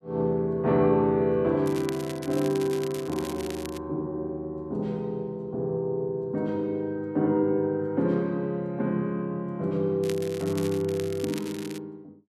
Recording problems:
crackling; from 1.5 to 4 s and from 10 s on; loose cable, SNR 15 dB

